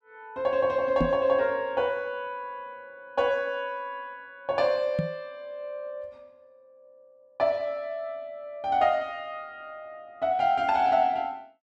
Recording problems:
microphone thump; at 1 s and at 5 s; peak +4 dB vs average level

